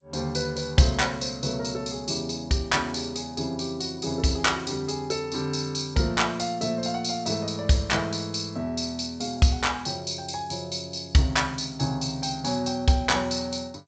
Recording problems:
codec artefacts; G.722, log-spectral distance 6 dB, nothing above 7.3 kHz

